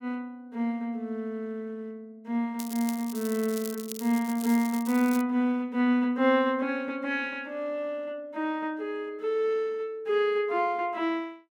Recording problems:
crackle; from 2.5 to 5 s; loose cable, SNR 13 dB

